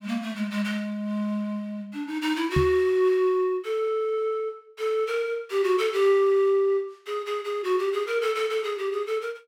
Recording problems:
microphone thump; at 2.5 s; peak +5 dB vs average level

